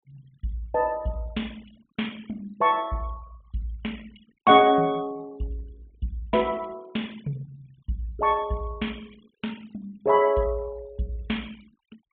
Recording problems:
low-pass filter; nothing above 4 kHz
denoising artefacts; signal-to-artefact ratio 26 dB

